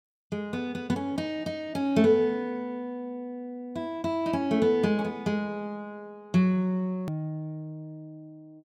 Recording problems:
click at an edit; at 7 s

